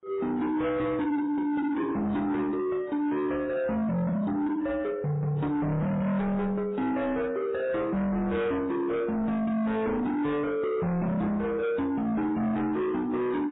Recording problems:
codec artefacts; MP3, then AAC, log-spectral distance 2 dB, nothing above 3.8 kHz
distorted audio; soft clipping, signal-to-distortion ratio 7 dB

